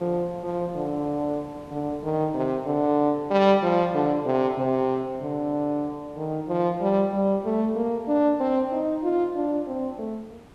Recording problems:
hiss; slope -7 dB per octave, SNR 24 dB

